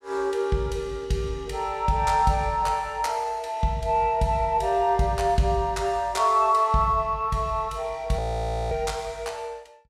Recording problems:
audio freezing; at 8 s for 0.5 s

